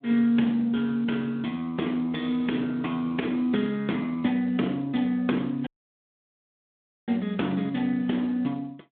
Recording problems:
telephone audio; 190 Hz to 3.5 kHz, Speex
dropout; at 5.5 s for 1.5 s

